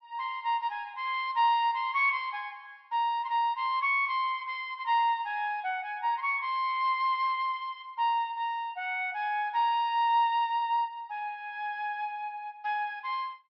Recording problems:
low-pass filter; nothing above 5.6 kHz

